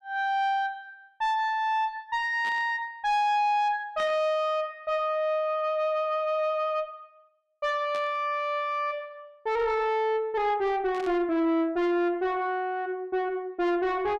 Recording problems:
distorted audio; soft clipping, signal-to-distortion ratio 10 dB
burst of static; 4 times, first at 2.5 s; peak -11 dB vs average level

